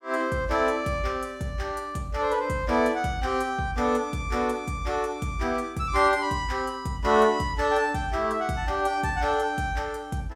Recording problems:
none

